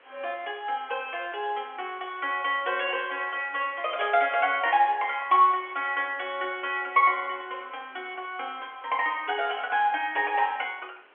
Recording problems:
phone line; 320 Hz to 3.3 kHz, G.711
background hiss; SNR 27 dB

